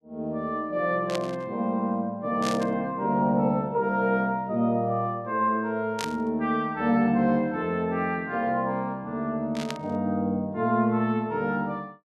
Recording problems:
burst of static; 4 times, first at 1 s; peak -2 dB vs average level

